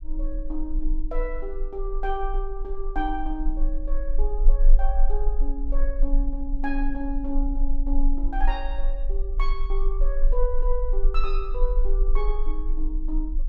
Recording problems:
rumble; below 32 Hz, strongest tone 20 Hz, SNR -5 dB

